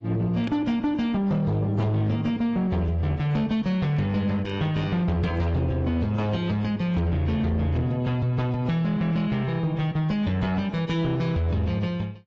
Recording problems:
codec artefacts; AAC, log-spectral distance 2 dB, nothing above 7.3 kHz
distorted audio; soft clipping, signal-to-distortion ratio 11 dB

